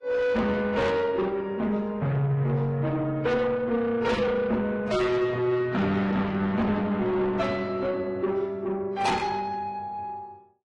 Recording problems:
lossy codec; AAC, then AAC, log-spectral distance 2 dB, nothing above 10.7 kHz
distortion; soft clipping, signal-to-distortion ratio 7 dB

